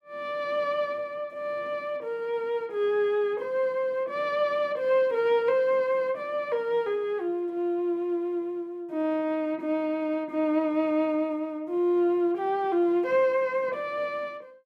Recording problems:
none

